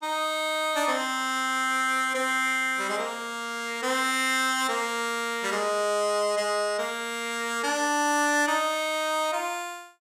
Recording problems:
none

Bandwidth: 15.5 kHz